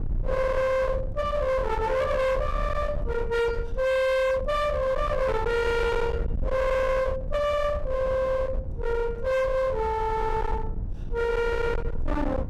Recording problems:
distorted audio; hard clipping, uneven, signal-to-distortion ratio 6 dB
low-frequency rumble; below 470 Hz, SNR 7 dB

